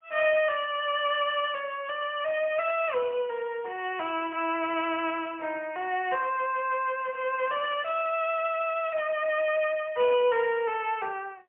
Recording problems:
telephone audio; 340 Hz to 3.2 kHz, AMR-NB, then MP3

